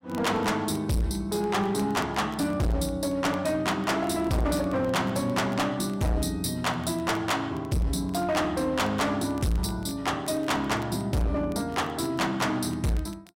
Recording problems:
distorted audio; hard clipping, signal-to-distortion ratio 6 dB
crackle; vinyl, SNR 27 dB

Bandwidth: 16 kHz